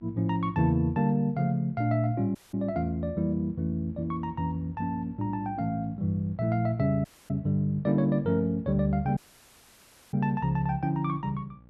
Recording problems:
hum; 60 Hz, harmonics up to 1.1 kHz, SNR 24 dB
dropout; at 2.5 s, at 7 s and at 9 s for 1 s

